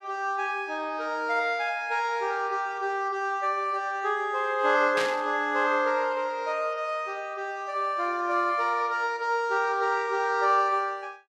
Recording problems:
static burst; at 5 s; peak -1 dB vs average level

